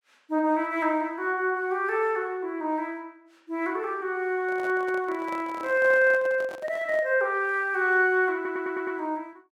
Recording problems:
microphone handling noise; from 4.5 to 7 s; peak -10 dB vs average level
stutter; at 8.5 s

